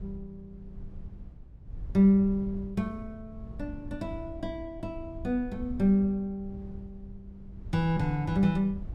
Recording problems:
low-frequency rumble; below 94 Hz, SNR 16 dB

